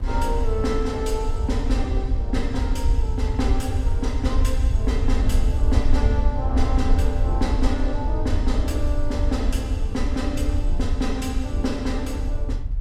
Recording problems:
rumble; below 72 Hz, SNR -3 dB
wind on the microphone; below 140 Hz, SNR 17 dB

